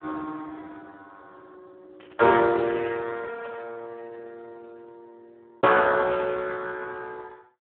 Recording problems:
telephone audio; 260 Hz to 2.5 kHz, Speex
burst of static; at 2 s and at 3.5 s; peak -20 dB vs average level

